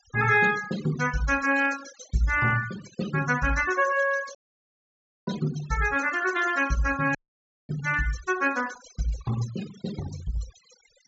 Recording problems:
treble cut off; nothing above 8 kHz
noise reduction artefacts; signal-to-artefact ratio 14 dB
dropout; at 4.5 s for 1 s and at 7 s for 0.5 s

